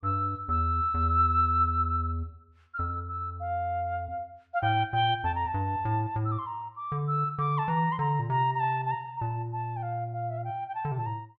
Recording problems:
none

